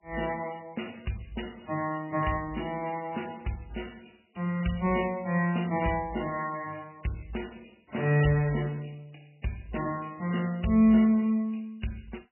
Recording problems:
lossy compression; MP3, log-spectral distance 7 dB, nothing above 2.8 kHz

